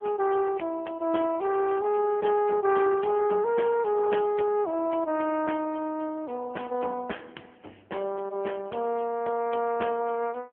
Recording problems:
phone line; 260 Hz to 2.8 kHz, AMR-NB

